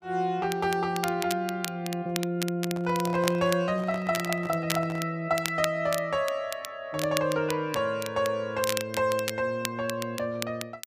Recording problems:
crackling; vinyl, SNR 9 dB
handling noise; from 2.5 to 5 s; peak -5 dB vs average level

